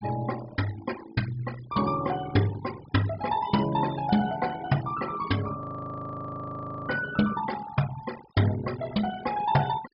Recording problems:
treble cut off; nothing above 5.5 kHz
noise reduction artefacts; signal-to-artefact ratio 14 dB
frozen audio; at 5.5 s for 1.5 s

